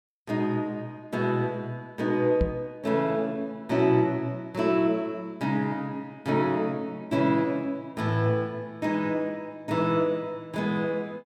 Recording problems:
knock on the microphone; at 2.5 s; peak +4 dB vs average level

